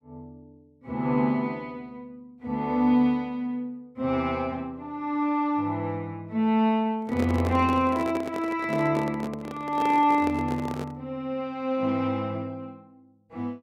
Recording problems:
microphone handling noise; from 7 to 11 s; peak -3 dB vs average level

